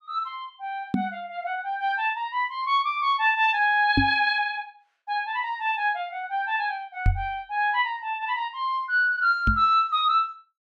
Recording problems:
knock on the microphone; 4 times, first at 1 s; peak +6 dB vs average level

